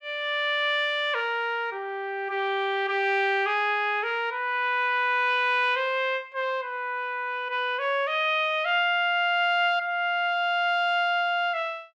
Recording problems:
none

